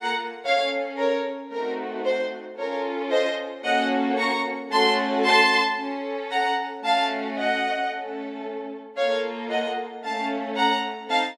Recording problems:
none

